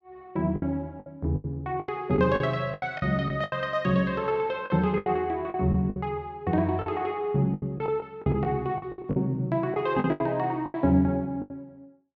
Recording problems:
packet loss; 13% of the sound replaced, filled with the last packet

